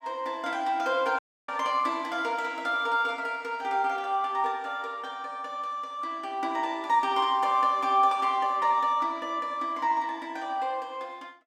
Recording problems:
dropout; at 1 s

